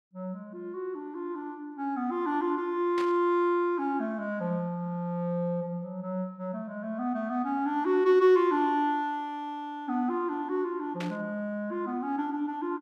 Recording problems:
burst of static; at 3 s and at 11 s; peak -5 dB vs average level

